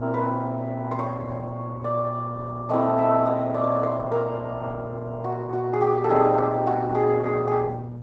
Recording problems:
lossy compression; Opus, log-spectral distance 2 dB
electrical hum; 60 Hz, harmonics up to 960 Hz, SNR 11 dB

